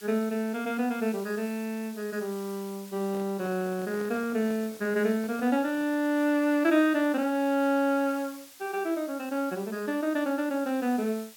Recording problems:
background hiss; slope +2 dB per octave, SNR 20 dB
microphone handling noise; from 3 to 6 s; peak -12 dB vs average level

